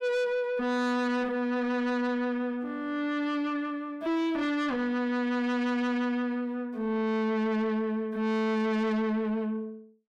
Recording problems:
distortion; soft clipping, signal-to-distortion ratio 6 dB

